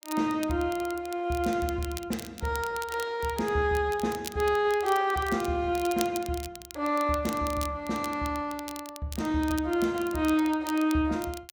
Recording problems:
crackling; vinyl, SNR 15 dB

